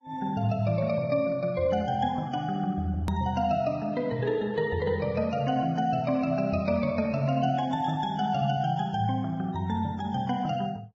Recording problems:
lossy compression; Vorbis, log-spectral distance 2 dB, nothing above 13.1 kHz
hard cut with a click; at 3 s

